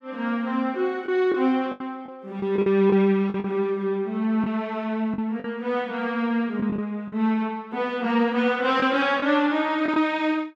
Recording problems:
lost packets; 6% of the sound replaced, filled with the last packet

